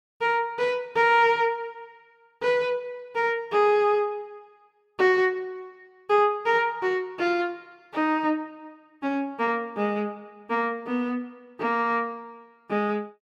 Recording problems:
none

